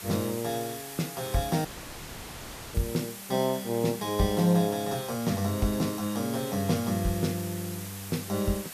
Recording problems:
hiss; slope 0 dB per octave, SNR 11 dB
dropout; at 1.5 s for 1 s

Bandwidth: 14.5 kHz